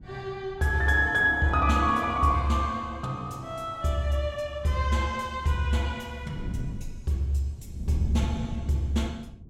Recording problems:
wind on the microphone; below 170 Hz, SNR 12 dB

